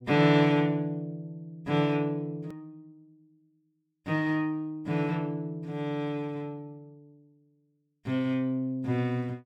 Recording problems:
edit click; at 2.5 s

